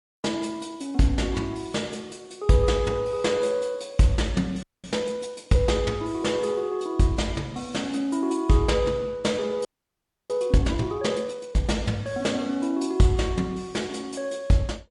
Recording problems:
lossy codec; MP3, log-spectral distance 2 dB, nothing above 10.7 kHz
audio freezing; at 4.5 s and at 9.5 s for 0.5 s

